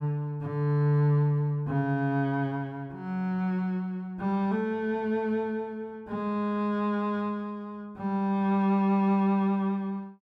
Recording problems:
none

